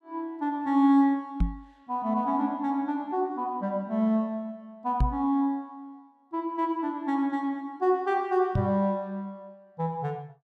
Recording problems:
knock on the microphone; at 1.5 s, at 5 s and at 8.5 s; peak +5 dB vs average level

